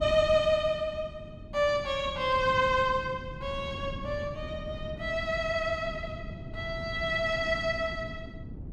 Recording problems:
wind noise; below 210 Hz, SNR 12 dB

